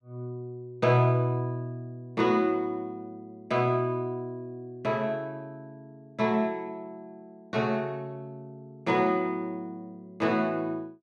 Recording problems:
none

